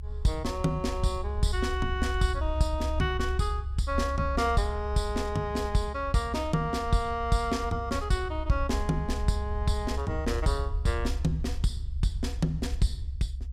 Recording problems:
low-frequency rumble; below 70 Hz, strongest tone 68 Hz, SNR 4 dB

